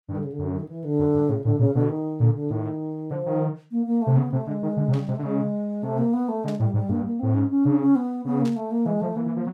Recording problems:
static burst; at 5 s, at 6.5 s and at 8.5 s; peak -14 dB vs average level

